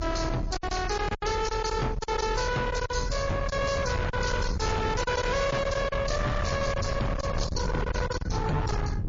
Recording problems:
codec artefacts; AAC, then MP3, log-spectral distance 5 dB, nothing above 6.5 kHz
distorted audio; hard clipping, signal-to-distortion ratio 6 dB
low-frequency rumble; below 450 Hz, SNR 3 dB
lost packets; 8% of the sound replaced, filled with silence

